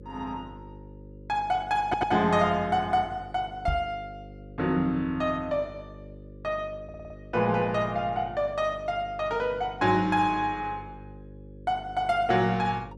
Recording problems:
hum; 50 Hz, harmonics up to 550 Hz, SNR 18 dB
stutter; at 2 s and at 7 s
knock on the microphone; at 3.5 s; peak +1 dB vs average level

